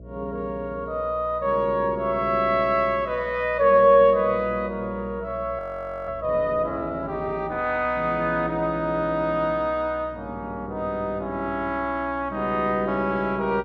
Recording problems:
hum; 60 Hz, harmonics up to 660 Hz, SNR 20 dB
frozen audio; at 5.5 s

